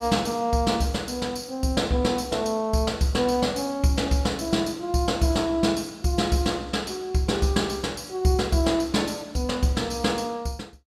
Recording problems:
none

